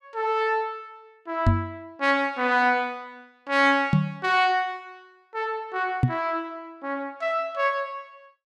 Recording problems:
microphone bump; at 1.5 s, at 4 s and at 6 s; peak +8 dB vs average level

